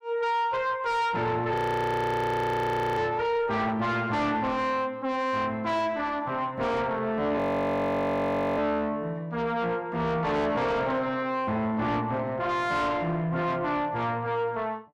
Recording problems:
distorted audio; soft clipping, signal-to-distortion ratio 7 dB
audio freezing; at 1.5 s for 1.5 s and at 7.5 s for 1 s

